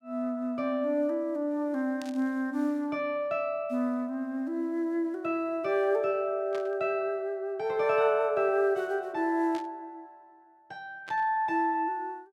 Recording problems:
burst of static; 4 times, first at 2 s; peak -11 dB vs average level

